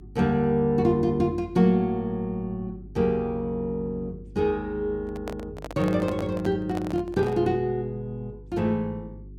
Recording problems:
hum; 50 Hz, harmonics up to 400 Hz, SNR 19 dB
microphone handling noise; from 5 to 7.5 s; peak -5 dB vs average level

